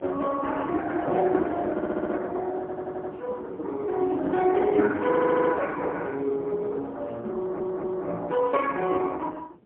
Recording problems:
telephone audio; 240 Hz to 3.4 kHz, AMR-NB, then MP3
wind on the microphone; below 530 Hz, SNR 22 dB
audio stuttering; 4 times, first at 1.5 s

